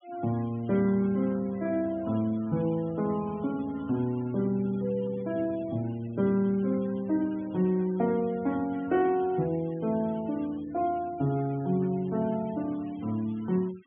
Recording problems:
treble missing; nothing above 3.4 kHz
noise reduction artefacts; signal-to-artefact ratio 24 dB

